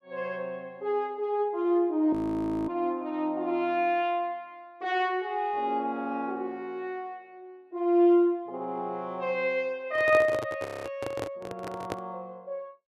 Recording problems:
frozen audio; at 2 s for 0.5 s and at 11 s
microphone handling noise; from 10 to 12 s; peak -1 dB vs average level

